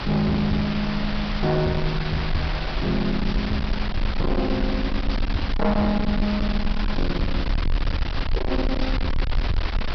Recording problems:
low-pass filter; nothing above 5.5 kHz
distortion; soft clipping, signal-to-distortion ratio 7 dB
hiss; SNR 5 dB
low-frequency rumble; below 62 Hz, SNR 3 dB

